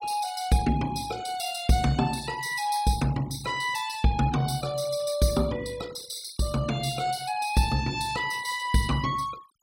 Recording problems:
denoising artefacts; signal-to-artefact ratio 18 dB

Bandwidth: 16 kHz